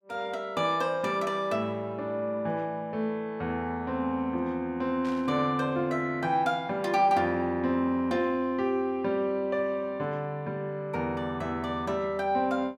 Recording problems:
static burst; at 5 s; peak -13 dB vs average level

